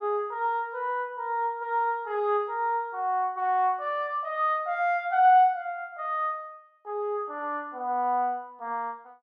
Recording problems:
none

